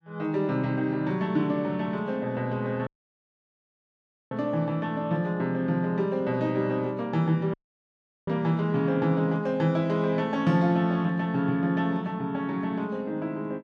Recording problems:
audio cutting out; at 3 s for 1.5 s and at 7.5 s for 0.5 s

